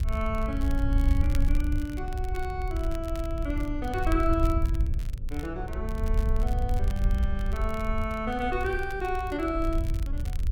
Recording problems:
electrical hum; 50 Hz, harmonics up to 550 Hz, SNR 22 dB
wind on the microphone; below 70 Hz, SNR -2 dB
crackle; vinyl, SNR 18 dB

